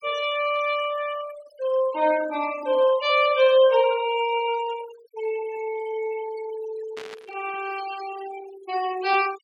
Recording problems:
denoising artefacts; signal-to-artefact ratio 15 dB
static burst; at 7 s; peak -12 dB vs average level

